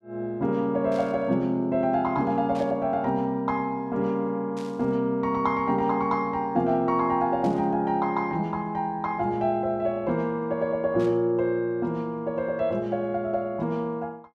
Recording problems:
burst of static; 5 times, first at 1 s; peak -15 dB vs average level

